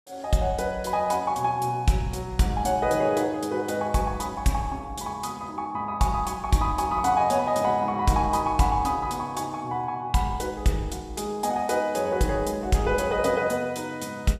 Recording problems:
none

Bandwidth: 14.5 kHz